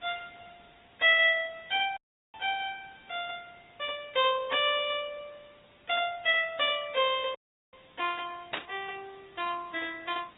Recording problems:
treble missing; nothing above 3.3 kHz
codec artefacts; Opus, log-spectral distance 7 dB
hiss; SNR 29 dB
audio cutting out; at 2 s and at 7.5 s
burst of static; at 8.5 s; peak -1 dB vs average level

